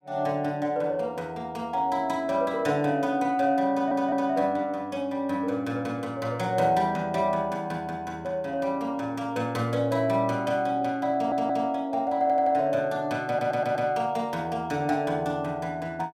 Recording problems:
audio stuttering; 4 times, first at 3.5 s

